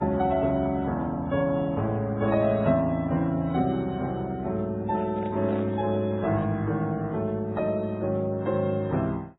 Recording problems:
lossy compression; Vorbis, then AAC, log-spectral distance 2 dB, nothing above 3.4 kHz
microphone handling noise; from 5 to 6.5 s; peak -9 dB vs average level

